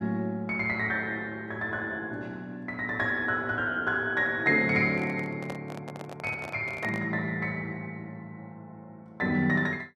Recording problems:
handling noise; from 5 to 7 s; peak -5 dB vs average level

